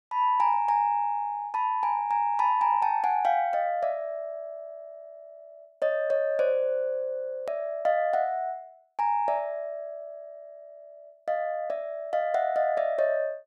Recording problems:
click at an edit; at 7.5 s

